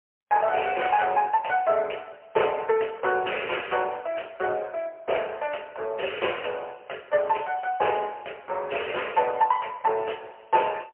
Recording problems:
phone line; 370 Hz to 3 kHz, AMR-NB, then MP3

